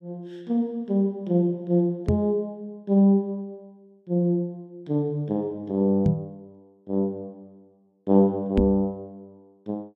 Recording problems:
knock on the microphone; at 2 s, at 6 s and at 8.5 s; peak +6 dB vs average level

